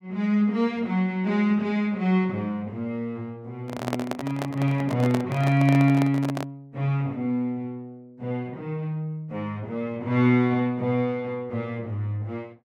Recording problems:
microphone handling noise; from 3.5 to 6.5 s; peak +1 dB vs average level

